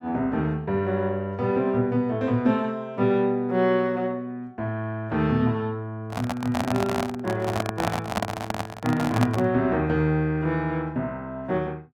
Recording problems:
microphone handling noise; from 6 to 9.5 s; peak +3 dB vs average level

